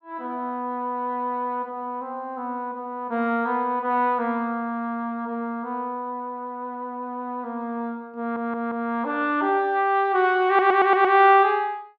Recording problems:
stutter; at 8 s and at 10 s

